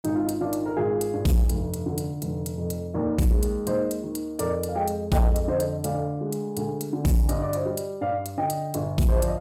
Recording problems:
distortion; soft clipping, signal-to-distortion ratio 12 dB

